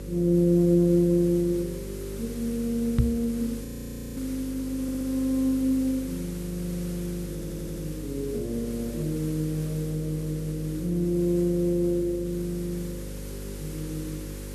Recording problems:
hum; 50 Hz, harmonics up to 550 Hz, SNR 11 dB
background hiss; slope 0 dB per octave, SNR 18 dB
knock on the microphone; at 3 s; peak +9 dB vs average level
audio freezing; at 3.5 s for 0.5 s
audio stuttering; at 5 s and at 7.5 s

